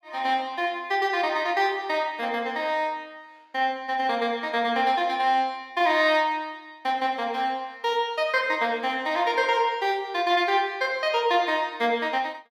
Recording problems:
none

